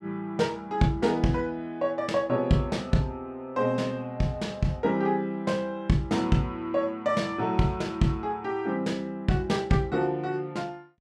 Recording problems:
none

